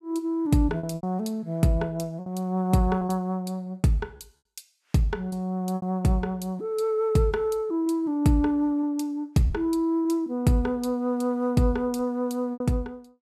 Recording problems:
lost packets; 4% of the sound replaced, filled with repeated pitch periods

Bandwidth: 14.5 kHz